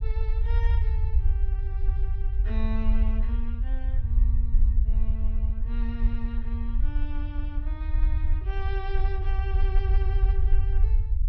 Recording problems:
low-pass filter; nothing above 6 kHz
rumble; below 58 Hz, SNR -13 dB

